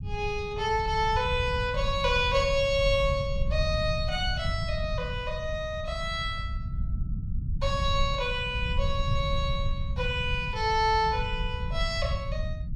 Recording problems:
low-frequency rumble; below 110 Hz, SNR 5 dB

